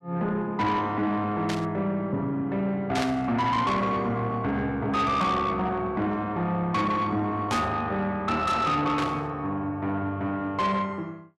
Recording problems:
distortion; soft clipping, signal-to-distortion ratio 11 dB
static burst; 4 times, first at 1.5 s; peak -1 dB vs average level

